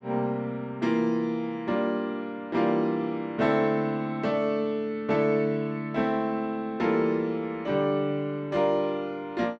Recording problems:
none

